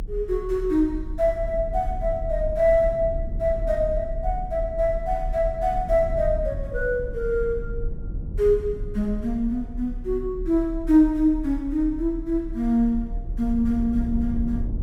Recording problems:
rumble; below 60 Hz, strongest tone 34 Hz, SNR 9 dB

